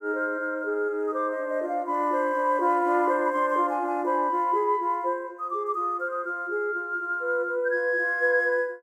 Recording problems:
none

